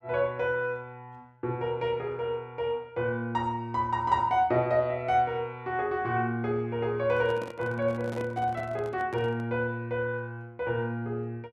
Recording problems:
handling noise; from 7 to 9.5 s; peak -7 dB vs average level

